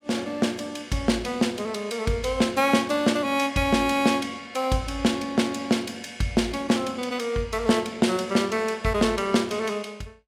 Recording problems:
none

